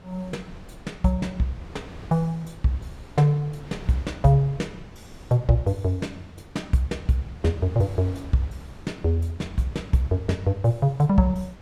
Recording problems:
wind noise; below 430 Hz, SNR 19 dB

